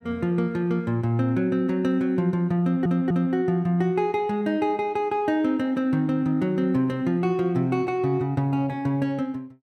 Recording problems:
audio stuttering; at 2.5 s

